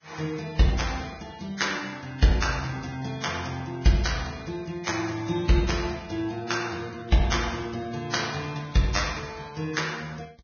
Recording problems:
lossy codec; Vorbis, log-spectral distance 5 dB, nothing above 6.5 kHz

